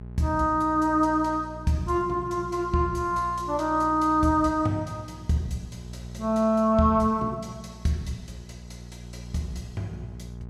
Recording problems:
hum; 60 Hz, harmonics up to 840 Hz, SNR 16 dB

